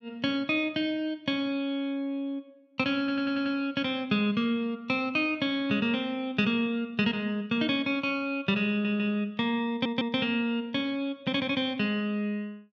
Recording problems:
stutter; at 3 s, at 8.5 s and at 9.5 s

